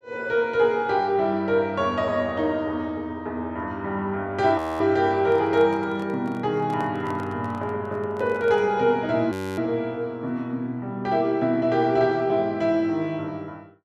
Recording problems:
audio freezing; at 4.5 s and at 9.5 s
handling noise; from 5 to 9 s; peak -12 dB vs average level

